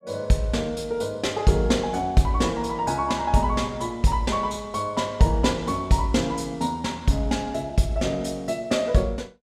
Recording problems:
none

